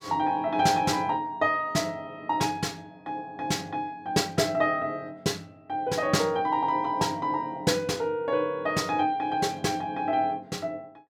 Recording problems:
none

